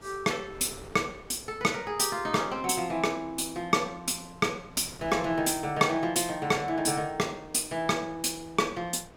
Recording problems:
wind noise; below 910 Hz, SNR 22 dB

